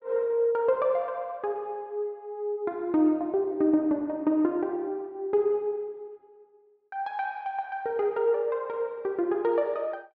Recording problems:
low-pass filter; nothing above 8 kHz

